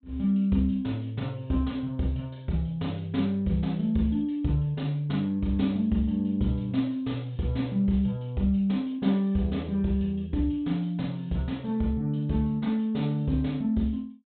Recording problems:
treble cut off; nothing above 4 kHz

